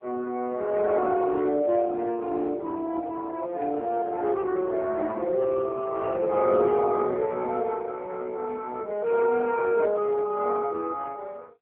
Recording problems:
telephone audio; 260 Hz to 3.3 kHz, AMR-NB

